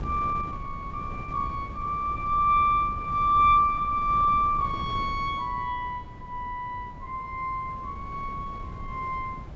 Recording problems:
treble cut off; nothing above 8 kHz
wind on the microphone; below 200 Hz, SNR 14 dB

